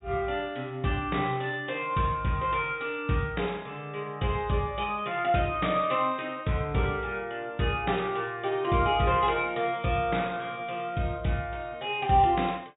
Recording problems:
treble cut off; nothing above 4 kHz

